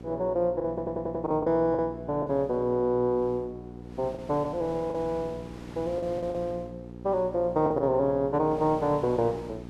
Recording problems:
hum; 60 Hz, harmonics up to 900 Hz, SNR 15 dB
wind on the microphone; below 1.7 kHz, SNR 22 dB
packet loss; 6% of the sound replaced, filled with the last packet
audio stuttering; at 0.5 s

